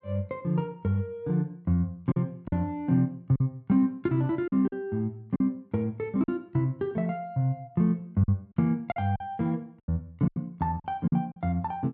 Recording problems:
lost packets; 6% of the sound replaced, filled with silence

